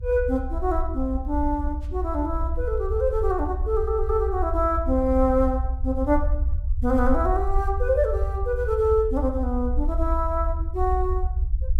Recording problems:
low-frequency rumble; below 64 Hz, SNR 3 dB

